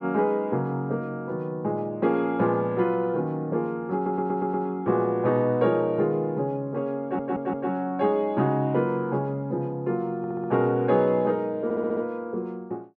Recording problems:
stutter; 4 times, first at 4 s

